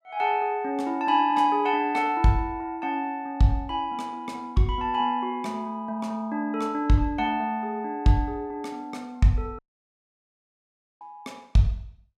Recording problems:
dropout; at 9.5 s for 1.5 s

